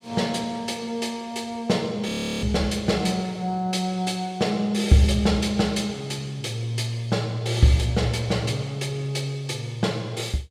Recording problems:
audio freezing; at 2 s

